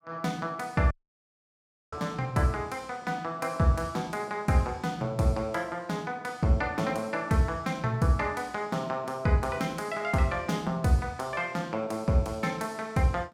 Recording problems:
audio cutting out; at 1 s for 1 s

